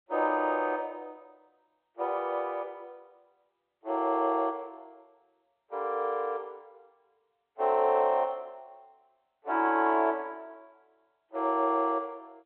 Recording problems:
phone line; 280 Hz to 3.2 kHz, G.711

